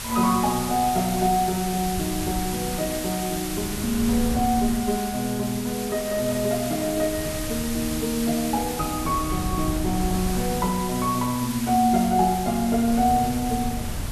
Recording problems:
background hiss; slope +1 dB per octave, SNR 8 dB
wind noise; below 150 Hz, SNR 11 dB

